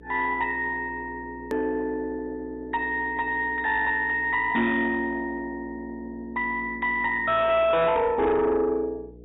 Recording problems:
low-pass filter; nothing above 3.3 kHz
codec artefacts; MP2, log-spectral distance 2 dB
distorted audio; soft clipping, signal-to-distortion ratio 11 dB
hum; 60 Hz, harmonics up to 480 Hz, SNR 22 dB
hard cut with a click; at 1.5 s

